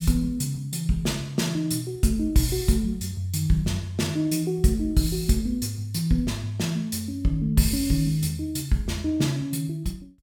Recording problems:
none

